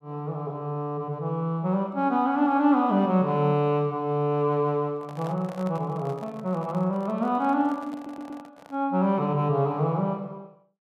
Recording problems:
handling noise; from 5 to 9 s; peak -10 dB vs average level
audio stuttering; at 8 s

